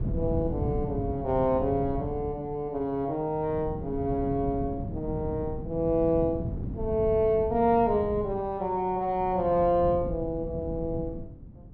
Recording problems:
wind noise; below 200 Hz, SNR 8 dB

